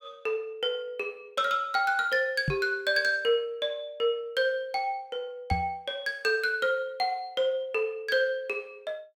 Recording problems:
microphone bump; at 2.5 s and at 5.5 s; peak +3 dB vs average level

